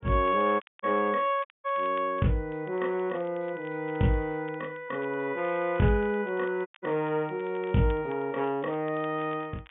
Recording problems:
treble cut off; nothing above 3.6 kHz
crackle; vinyl, SNR 28 dB
dropout; at 0.5 s, at 1.5 s and at 6.5 s

